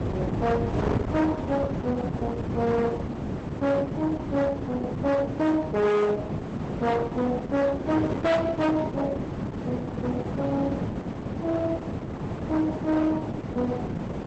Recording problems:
lossy codec; Opus, log-spectral distance 2 dB, nothing above 8 kHz
distorted audio; hard clipping, uneven, signal-to-distortion ratio 8 dB
wind noise; below 460 Hz, SNR 4 dB

